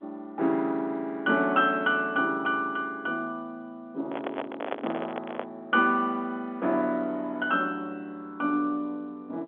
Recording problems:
telephone audio; 190 Hz to 3.6 kHz, G.711
microphone handling noise; from 4 to 5.5 s; peak 0 dB vs average level

